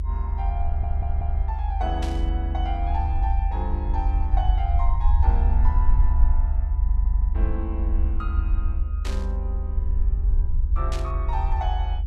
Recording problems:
hum; 60 Hz, harmonics up to 960 Hz, SNR 21 dB
rumble; below 72 Hz, SNR -9 dB
audio stuttering; at 0.5 s and at 7 s
burst of static; at 2 s, at 9 s and at 11 s; peak +1 dB vs average level

